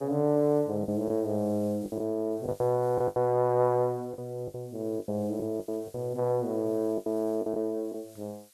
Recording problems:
background hiss; slope +4 dB per octave, SNR 27 dB
packet loss; 10% of the sound replaced, filled with the last packet

